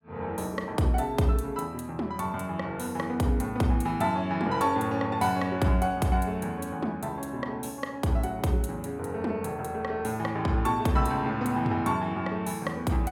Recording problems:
none

